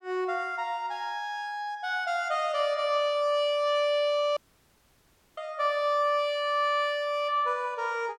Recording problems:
audio cutting out; at 4.5 s for 1 s

